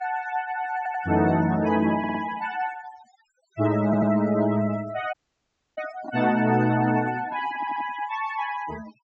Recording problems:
treble cut off; nothing above 7.7 kHz
denoising artefacts; signal-to-artefact ratio 15 dB
audio stuttering; 4 times, first at 1 s
audio cutting out; at 5 s for 0.5 s
handling noise; from 6 to 8 s; peak -8 dB vs average level

